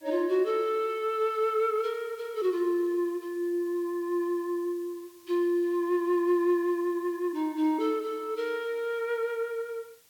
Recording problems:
background hiss; slope 0 dB per octave, SNR 27 dB

